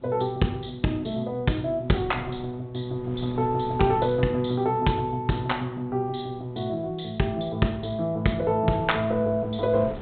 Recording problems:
treble missing; nothing above 4 kHz
wind noise; below 450 Hz, SNR 20 dB

